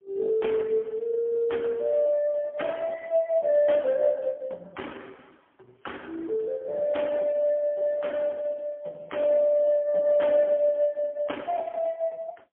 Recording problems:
telephone audio; 260 Hz to 3.3 kHz, AMR-NB, then MP3

